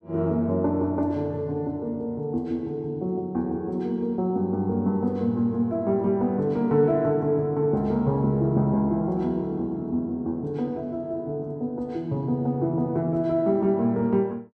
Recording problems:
none

